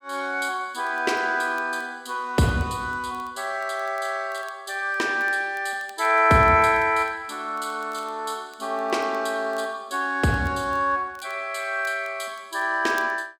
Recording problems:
crackle; vinyl, SNR 30 dB

